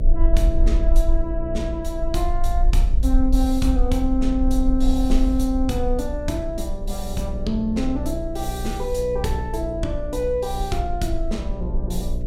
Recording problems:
electrical hum; 60 Hz, harmonics up to 660 Hz, SNR 8 dB
low-frequency rumble; below 46 Hz, strongest tone 22 Hz, SNR 1 dB

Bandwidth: 16 kHz